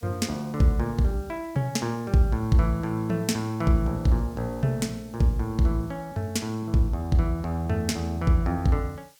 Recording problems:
hiss; slope +3 dB per octave, SNR 28 dB

